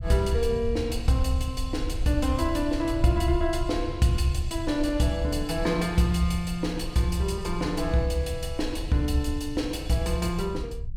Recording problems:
low-frequency rumble; below 76 Hz, SNR 9 dB

